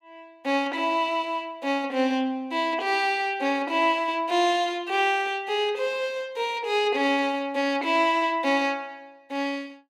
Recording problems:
none

